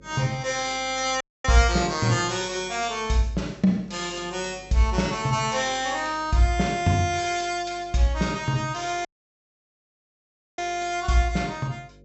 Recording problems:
treble missing; nothing above 7.8 kHz
hum; 50 Hz, harmonics up to 550 Hz, SNR 26 dB
audio cutting out; at 1 s and at 9 s for 1.5 s

